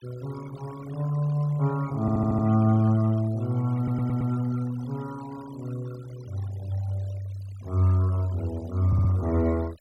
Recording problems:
noise reduction artefacts; signal-to-artefact ratio 23 dB
audio stuttering; at 2 s, at 4 s and at 9 s

